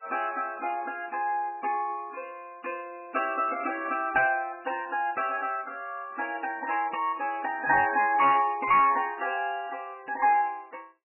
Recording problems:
lossy compression; MP3, log-spectral distance 5 dB, nothing above 2.8 kHz
distorted audio; hard clipping, uneven, signal-to-distortion ratio 11 dB

